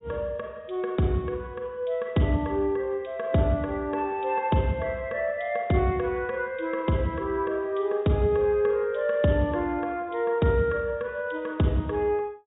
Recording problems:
treble missing; nothing above 4 kHz

